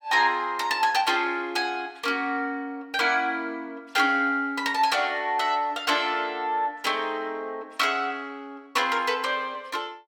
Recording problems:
none

